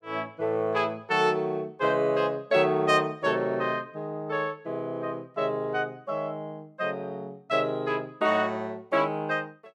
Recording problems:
none

